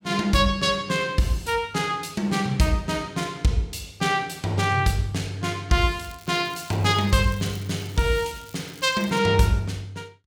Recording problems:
crackle; from 6 to 9 s; loose cable, SNR 22 dB

